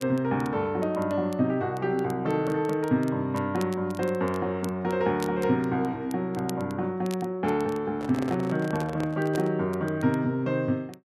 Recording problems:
crackle; vinyl, SNR 23 dB
microphone handling noise; from 8 to 9.5 s; peak -5 dB vs average level

